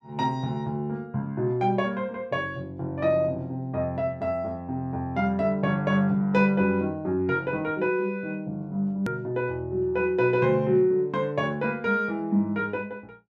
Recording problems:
click at an edit; at 9 s

